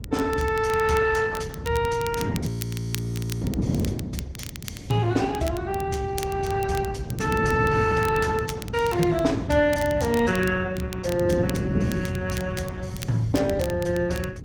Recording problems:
lossy codec; Opus, log-spectral distance 3 dB, nothing above 18.3 kHz
rumble; below 130 Hz, SNR 8 dB
wind noise; below 270 Hz, SNR 7 dB
crackling; vinyl, SNR 16 dB
frozen audio; at 2.5 s for 1 s

